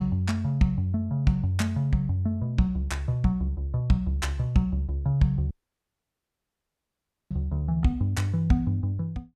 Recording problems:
dropout; at 5.5 s for 2 s

